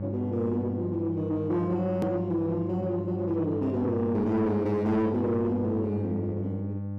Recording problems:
distortion; soft clipping, signal-to-distortion ratio 11 dB
hum; 50 Hz, harmonics up to 800 Hz, SNR 6 dB
click at an edit; at 2 s

